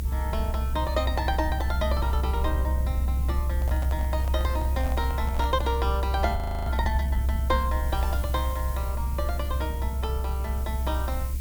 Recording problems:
hiss; SNR 13 dB
low-frequency rumble; below 68 Hz, strongest tone 66 Hz, SNR -4 dB
handling noise; from 3.5 to 5.5 s; peak -3 dB vs average level
frozen audio; at 6.5 s

